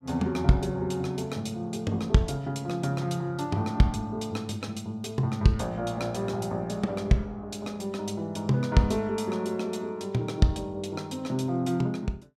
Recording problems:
none

